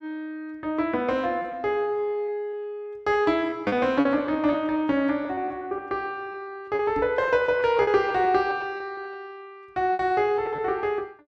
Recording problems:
lost packets; 7% of the sound replaced, filled with repeated pitch periods
microphone bump; at 7 s; peak -5 dB vs average level

